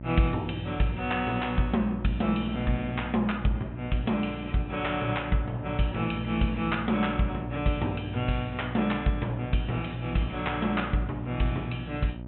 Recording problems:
treble missing; nothing above 3.6 kHz
hum; 60 Hz, harmonics up to 960 Hz, SNR 10 dB

